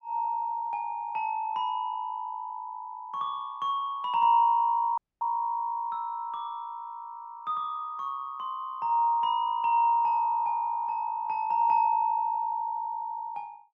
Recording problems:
audio cutting out; at 5 s

